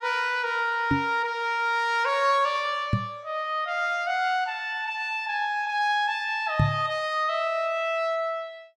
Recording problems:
knock on the microphone; at 1 s, at 3 s and at 6.5 s; peak +6 dB vs average level

